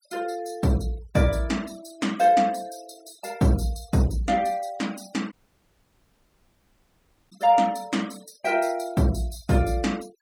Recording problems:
noise reduction artefacts; signal-to-artefact ratio 22 dB
dropout; at 5.5 s for 2 s

